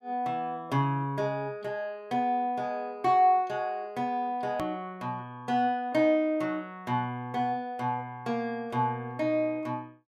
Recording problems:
hard cut with a click; at 4.5 s

